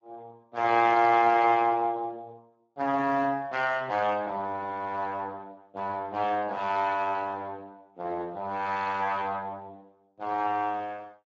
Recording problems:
lossy codec; Speex, log-spectral distance 2 dB

